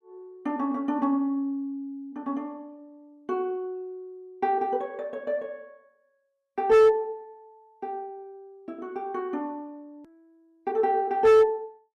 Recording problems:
distorted audio; hard clipping, signal-to-distortion ratio 11 dB
edit click; at 10 s

